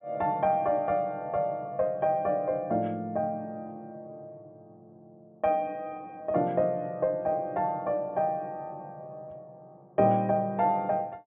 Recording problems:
treble cut off; nothing above 3.7 kHz

